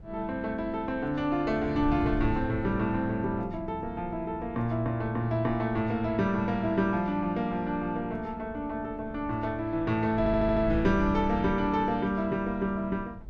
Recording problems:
wind noise; below 110 Hz, SNR 13 dB
stutter; at 10 s

